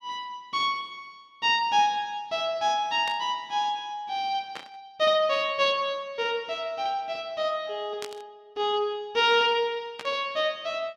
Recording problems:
static burst; 4 times, first at 3 s; peak -7 dB vs average level

